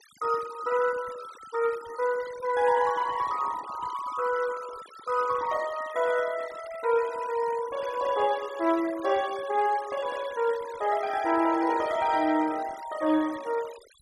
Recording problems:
noise reduction artefacts; signal-to-artefact ratio 17 dB

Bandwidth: 12 kHz